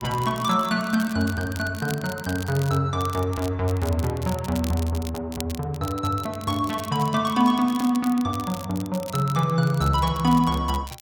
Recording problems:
crackling; vinyl, SNR 16 dB

